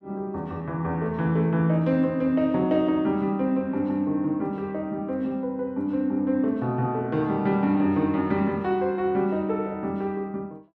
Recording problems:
none

